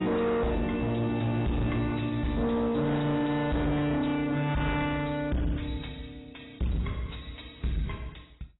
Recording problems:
codec artefacts; AAC, log-spectral distance 5 dB, nothing above 3.8 kHz
distortion; soft clipping, signal-to-distortion ratio 7 dB

